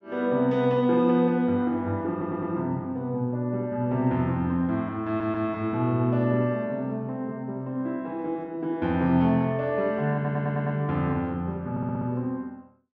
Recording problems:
stutter; 4 times, first at 2 s

